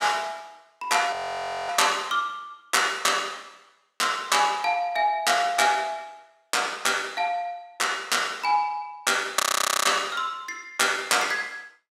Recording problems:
audio freezing; at 1 s for 0.5 s and at 9.5 s

